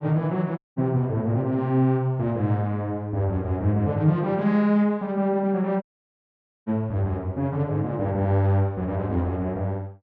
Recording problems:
audio cutting out; at 0.5 s and at 6 s for 1 s

